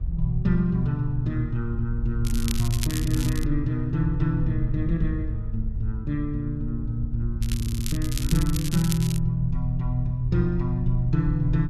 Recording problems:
wind on the microphone; below 64 Hz, SNR 6 dB
crackling; from 2.5 to 3.5 s and from 7.5 to 9 s; loose cable, SNR 9 dB
stutter; at 7.5 s

